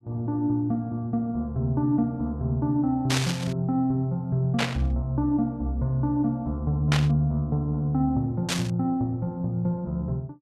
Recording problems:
static burst; 4 times, first at 3 s; peak +4 dB vs average level

